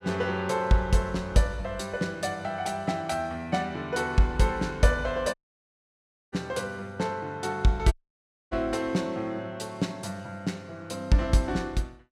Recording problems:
audio cutting out; at 5.5 s for 1 s and at 8 s for 0.5 s

